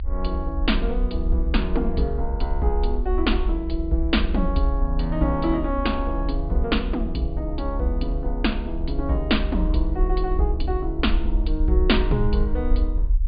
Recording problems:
treble cut off; nothing above 4.7 kHz
rumble; below 56 Hz, strongest tone 38 Hz, SNR 2 dB

